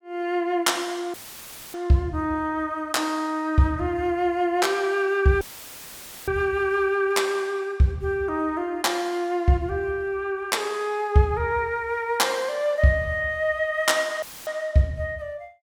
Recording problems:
dropout; at 1 s for 0.5 s, at 5.5 s for 1 s and at 14 s; filled with static

